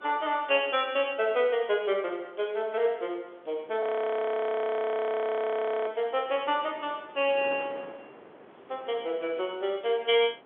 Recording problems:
phone line; 300 Hz to 3.5 kHz, G.711
wind on the microphone; below 1.3 kHz, SNR 22 dB
audio freezing; at 4 s for 2 s

